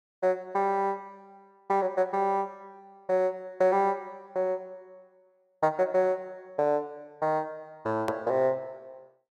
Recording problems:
edit click; at 8 s

